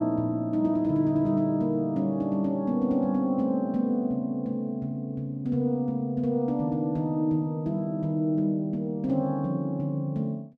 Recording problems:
none

